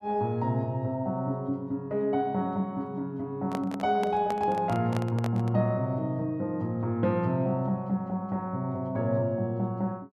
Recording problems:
microphone handling noise; from 3.5 to 5.5 s; peak -2 dB vs average level

